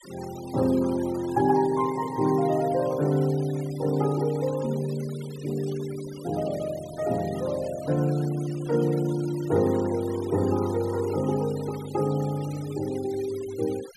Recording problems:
denoising artefacts; signal-to-artefact ratio 19 dB

